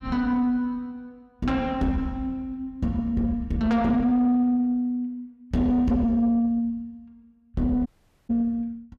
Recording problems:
distortion; soft clipping, signal-to-distortion ratio 12 dB
dropout; at 8 s

